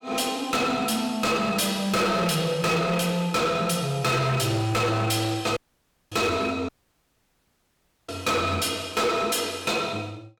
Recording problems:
distorted audio; hard clipping, signal-to-distortion ratio 7 dB
dropout; at 5.5 s for 0.5 s and at 6.5 s for 1.5 s

